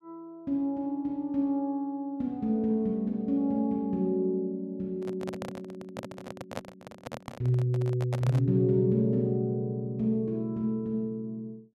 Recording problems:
microphone handling noise; from 5 to 8.5 s; peak -3 dB vs average level

